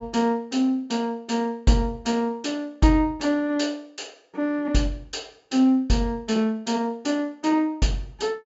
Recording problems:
treble missing; nothing above 8 kHz

